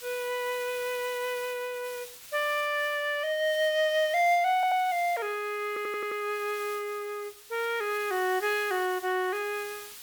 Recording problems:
hiss; slope +2 dB per octave, SNR 16 dB
audio stuttering; at 4.5 s and at 5.5 s

